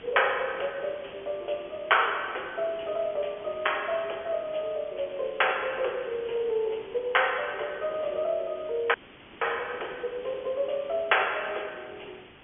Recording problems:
phone line; 370 Hz to 3.3 kHz, G.711
hiss; SNR 19 dB
dropout; at 9 s

